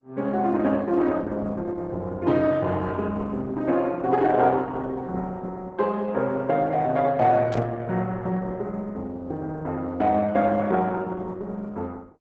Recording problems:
lossy compression; Opus, log-spectral distance 3 dB
burst of static; at 7.5 s; peak -10 dB vs average level

